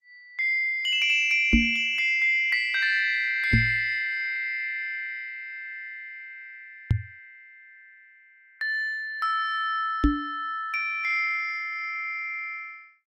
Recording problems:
codec artefacts; Opus, log-spectral distance 2 dB, nothing above 15.6 kHz
microphone thump; 4 times, first at 1.5 s; peak +7 dB vs average level

